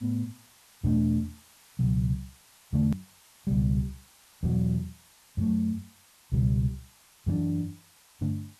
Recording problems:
hiss; SNR 26 dB
edit click; at 3 s

